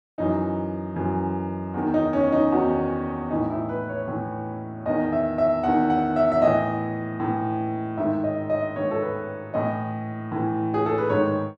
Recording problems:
none

